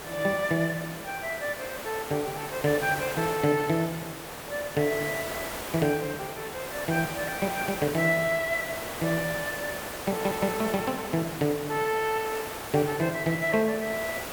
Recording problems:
background hiss; SNR 7 dB

